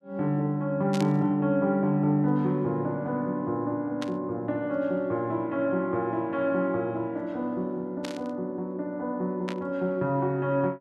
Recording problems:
static burst; 4 times, first at 1 s; peak -5 dB vs average level

